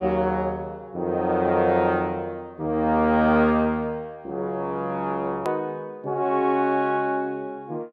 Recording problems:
hard cut with a click; at 5.5 s

